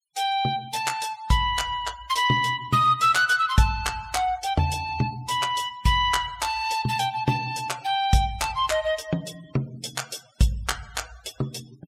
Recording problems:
noise reduction artefacts; signal-to-artefact ratio 21 dB

